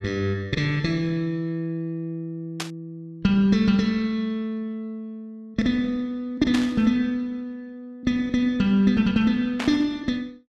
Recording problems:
static burst; at 2.5 s, at 6.5 s and at 9.5 s; peak -2 dB vs average level

